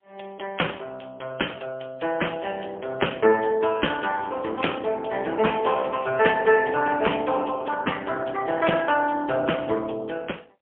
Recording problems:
phone line; 280 Hz to 3.3 kHz, AMR-NB, then MP3

